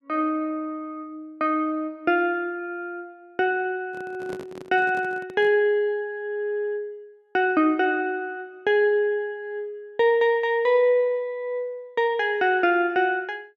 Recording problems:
microphone handling noise; from 4 to 5.5 s; peak -9 dB vs average level

